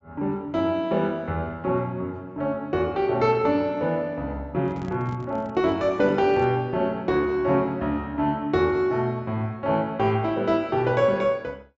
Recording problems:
treble missing; nothing above 7.6 kHz
microphone handling noise; from 4.5 to 6.5 s; peak -9 dB vs average level

